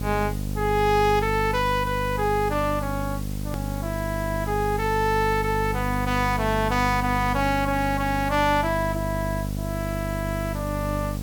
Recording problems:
hum; 50 Hz, harmonics up to 750 Hz, SNR 5 dB
background hiss; slope +1 dB per octave, SNR 17 dB
edit click; at 3.5 s

